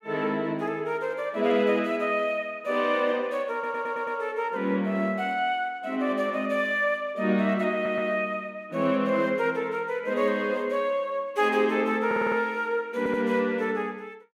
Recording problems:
audio stuttering; 4 times, first at 3.5 s

